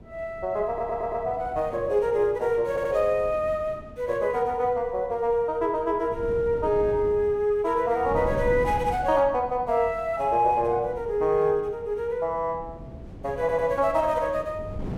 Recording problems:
wind noise; below 270 Hz, SNR 16 dB
stutter; at 0.5 s, at 2.5 s and at 13 s

